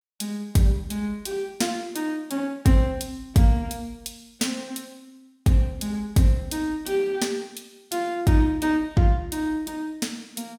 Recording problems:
none

